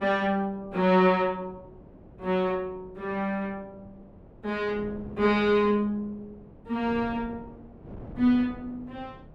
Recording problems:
wind noise; below 390 Hz, SNR 20 dB

